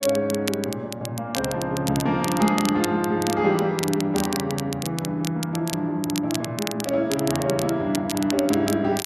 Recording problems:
crackling; vinyl, SNR 9 dB

